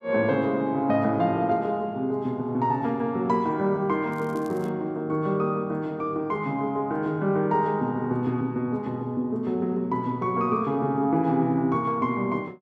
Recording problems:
crackle; at 4 s; loose cable, SNR 29 dB

